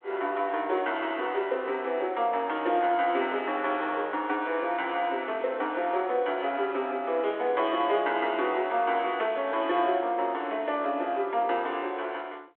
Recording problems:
phone line; 300 Hz to 3.6 kHz, G.726

